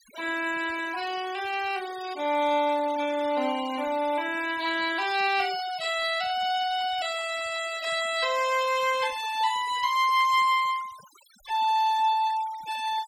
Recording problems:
denoising artefacts; signal-to-artefact ratio 18 dB

